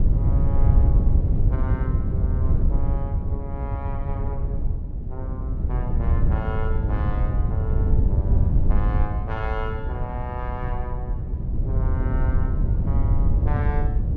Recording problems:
wind noise; below 100 Hz, SNR -12 dB

